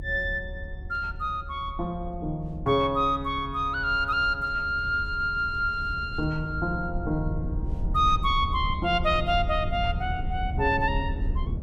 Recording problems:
rumble; below 90 Hz, SNR 8 dB

